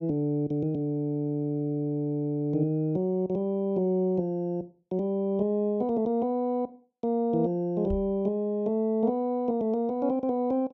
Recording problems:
microphone bump; at 8 s; peak -3 dB vs average level

